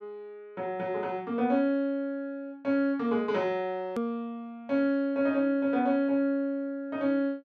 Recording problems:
edit click; at 4 s

